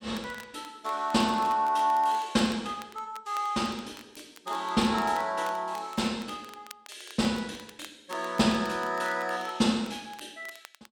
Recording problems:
crackling; vinyl, SNR 21 dB

